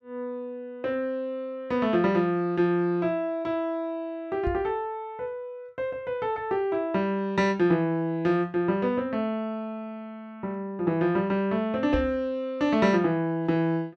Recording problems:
microphone bump; at 4.5 s and at 12 s; peak -1 dB vs average level

